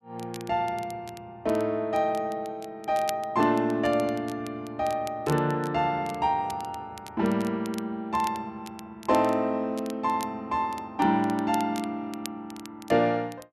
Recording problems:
crackling; vinyl, SNR 19 dB

